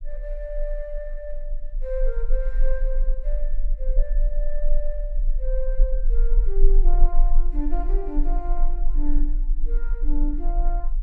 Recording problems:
rumble; below 32 Hz, strongest tone 22 Hz, SNR -9 dB

